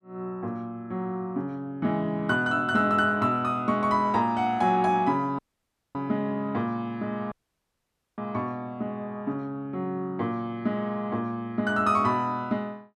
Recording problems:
dropout; at 5.5 s for 0.5 s and at 7.5 s for 1 s

